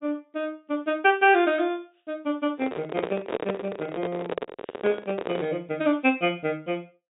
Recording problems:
treble missing; nothing above 4 kHz
handling noise; from 2.5 to 5.5 s; peak +2 dB vs average level

